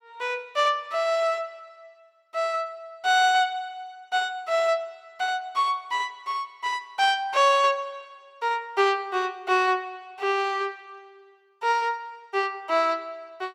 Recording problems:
none

